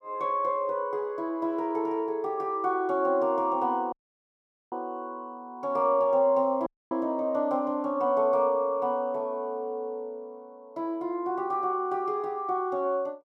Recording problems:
audio cutting out; at 4 s for 1 s and at 6.5 s

